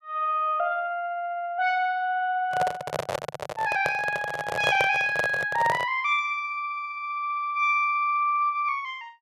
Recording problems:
handling noise; from 2.5 to 6 s; peak +3 dB vs average level

